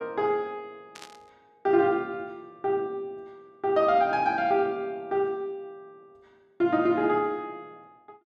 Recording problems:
burst of static; at 1 s; peak -12 dB vs average level

